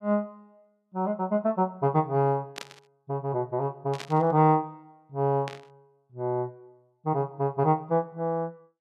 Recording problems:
static burst; at 2.5 s, at 4 s and at 5.5 s; peak -5 dB vs average level

